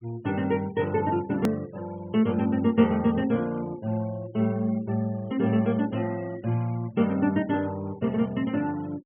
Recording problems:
treble cut off; nothing above 3.3 kHz
denoising artefacts; signal-to-artefact ratio 24 dB
edit click; at 1.5 s

